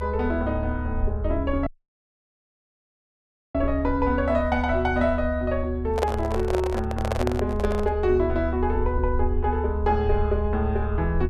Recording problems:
low-frequency rumble; below 74 Hz, strongest tone 74 Hz, SNR 4 dB
audio cutting out; at 1.5 s for 2 s
handling noise; from 6 to 8 s; peak +3 dB vs average level

